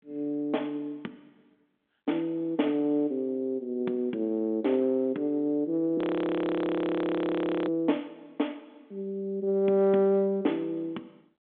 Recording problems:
phone line; 220 Hz to 3.8 kHz, G.726
frozen audio; at 6 s for 1.5 s

